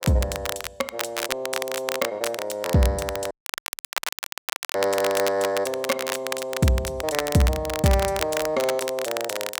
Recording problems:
crackle; vinyl, SNR 5 dB
audio cutting out; at 3.5 s for 1.5 s

